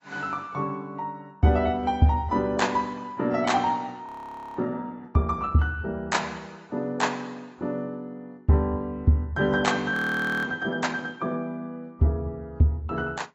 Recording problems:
lossy compression; AAC, log-spectral distance 2 dB, nothing above 16 kHz
audio freezing; at 4 s for 0.5 s and at 10 s for 0.5 s

